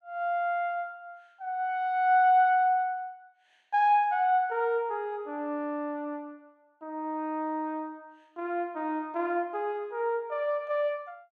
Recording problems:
none

